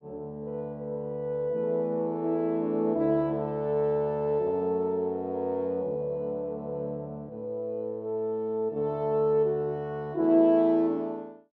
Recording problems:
none

